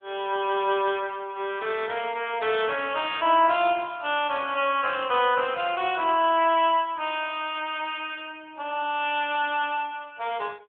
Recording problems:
phone line; 280 Hz to 3.5 kHz, AMR-NB

